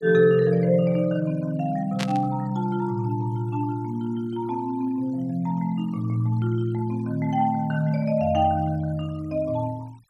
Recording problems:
noise reduction artefacts; signal-to-artefact ratio 28 dB
static burst; at 2 s; peak -2 dB vs average level

